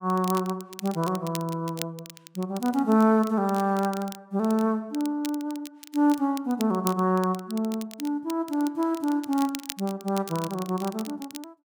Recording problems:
crackle; vinyl, SNR 16 dB

